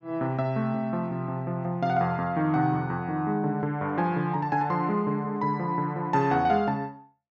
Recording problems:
treble missing; nothing above 8 kHz

